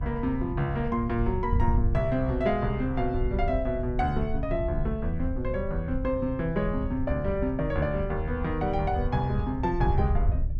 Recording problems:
hum; 50 Hz, harmonics up to 400 Hz, SNR 17 dB
wind on the microphone; below 82 Hz, SNR 4 dB

